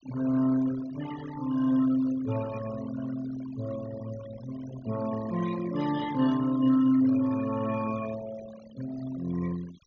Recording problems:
treble cut off; nothing above 6.8 kHz
noise reduction artefacts; signal-to-artefact ratio 16 dB

